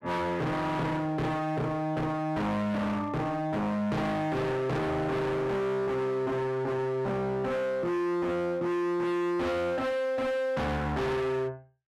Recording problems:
distorted audio; hard clipping, signal-to-distortion ratio 6 dB

